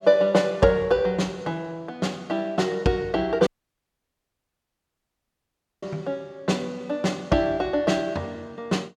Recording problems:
audio cutting out; at 3.5 s for 2.5 s

